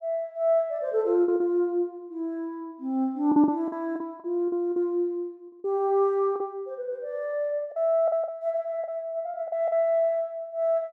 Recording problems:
packet loss; 7% of the sound replaced, filled with the last packet

